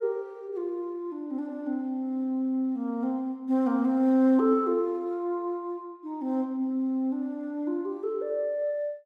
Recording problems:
none

